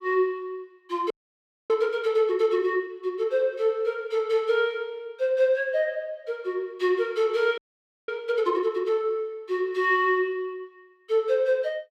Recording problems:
audio freezing; at 1 s for 0.5 s and at 7.5 s for 0.5 s

